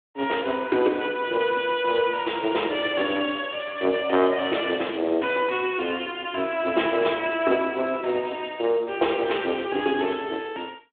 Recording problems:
phone line; 240 Hz to 3.6 kHz, Speex

